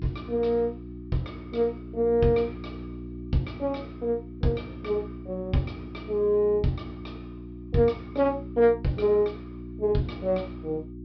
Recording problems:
treble cut off; nothing above 5.5 kHz
hum; 60 Hz, harmonics up to 360 Hz, SNR 13 dB

